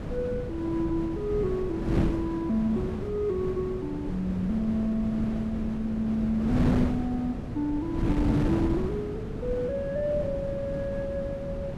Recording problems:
wind noise; below 290 Hz, SNR 2 dB

